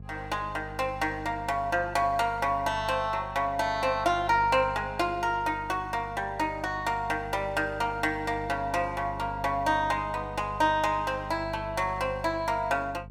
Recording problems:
electrical hum; 50 Hz, harmonics up to 500 Hz, SNR 15 dB

